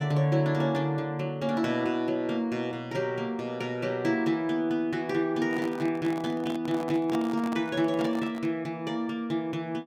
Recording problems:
handling noise; from 5.5 to 8.5 s; peak -3 dB vs average level

